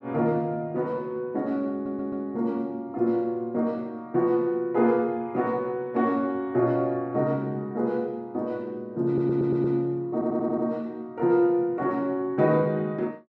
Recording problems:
audio stuttering; at 1.5 s, at 9 s and at 10 s

